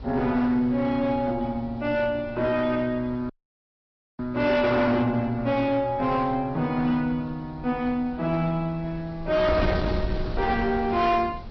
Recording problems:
low-pass filter; nothing above 5.7 kHz
codec artefacts; AAC, then MP3, log-spectral distance 2 dB
distortion; hard clipping, signal-to-distortion ratio 12 dB
wind on the microphone; below 310 Hz, SNR 12 dB
dropout; at 3.5 s for 1 s

